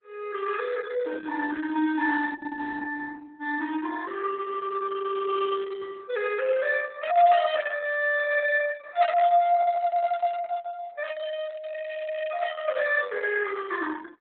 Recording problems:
lossy compression; Opus, log-spectral distance 4 dB, nothing above 3.6 kHz

